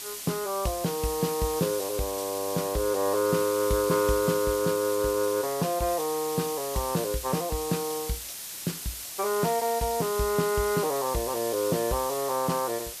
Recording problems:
hiss; slope +2 dB per octave, SNR 7 dB

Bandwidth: 14.5 kHz